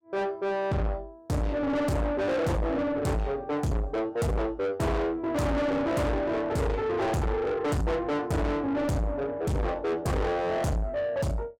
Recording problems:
distortion; soft clipping, signal-to-distortion ratio 6 dB

